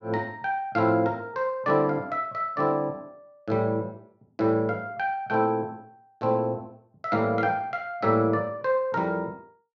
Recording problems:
none

